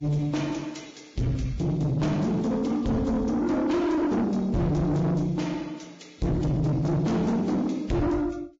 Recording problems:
codec artefacts; Vorbis, log-spectral distance 2 dB, nothing above 18.3 kHz
distortion; soft clipping, signal-to-distortion ratio 8 dB

